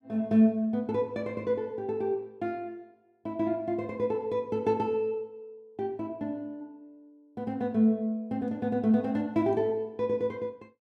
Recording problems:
none

